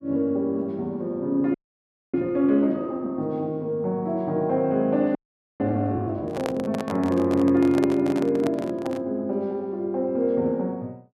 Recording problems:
audio freezing; at 1.5 s for 0.5 s and at 5 s
microphone handling noise; from 6 to 9 s; peak -2 dB vs average level

